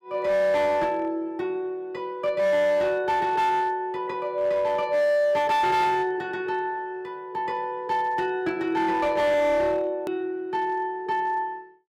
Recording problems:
distorted audio; hard clipping, uneven, signal-to-distortion ratio 11 dB
edit click; at 10 s

